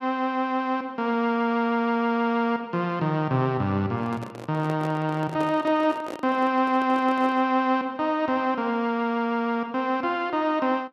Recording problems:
handling noise; from 4 to 7.5 s; peak -7 dB vs average level

